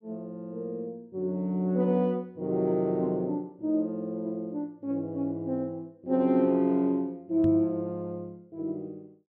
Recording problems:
microphone bump; at 7.5 s; peak -1 dB vs average level

